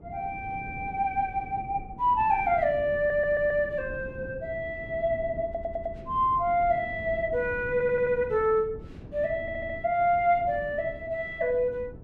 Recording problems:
wind on the microphone; below 260 Hz, SNR 16 dB
audio stuttering; 4 times, first at 3 s

